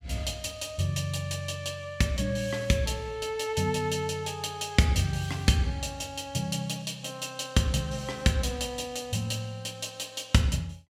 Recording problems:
none

